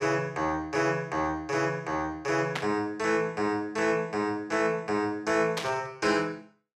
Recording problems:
static burst; at 2.5 s and at 5.5 s; peak +1 dB vs average level

